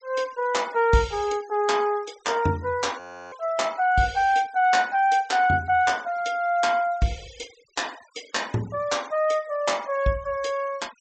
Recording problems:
treble missing; nothing above 8 kHz
denoising artefacts; signal-to-artefact ratio 23 dB
audio freezing; at 3 s

